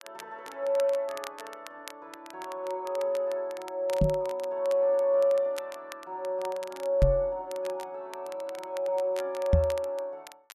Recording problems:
crackling; vinyl, SNR 19 dB
microphone bump; at 4 s, at 7 s and at 9.5 s; peak +10 dB vs average level

